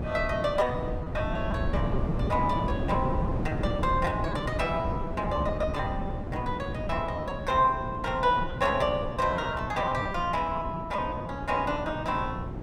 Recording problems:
hum; 60 Hz, harmonics up to 720 Hz, SNR 12 dB
wind noise; below 250 Hz, SNR 5 dB
lost packets; 12% of the sound replaced, filled with repeated pitch periods

